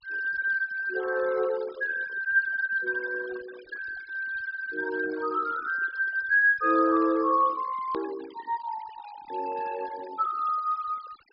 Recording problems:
treble cut off; nothing above 5.5 kHz
denoising artefacts; signal-to-artefact ratio 20 dB
edit click; at 8 s

